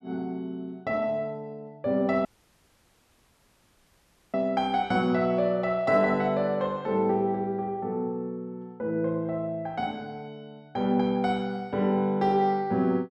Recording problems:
audio cutting out; at 2.5 s for 2 s

